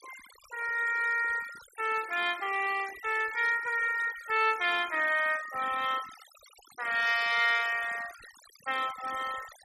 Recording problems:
denoising artefacts; signal-to-artefact ratio 16 dB

